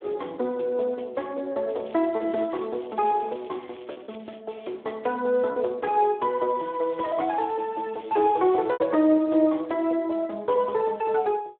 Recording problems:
phone line; 260 Hz to 3.8 kHz, Speex
packet loss; 2% of the sound replaced, filled with repeated pitch periods
crackle; from 1.5 to 4.5 s and from 6.5 to 9 s; loose cable, SNR 27 dB

